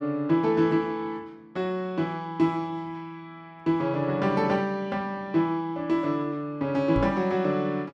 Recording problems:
microphone bump; at 7 s; peak 0 dB vs average level

